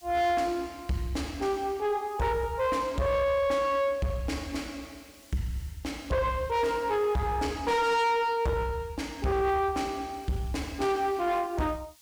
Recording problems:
distortion; soft clipping, signal-to-distortion ratio 8 dB
background hiss; slope +3 dB per octave, SNR 26 dB

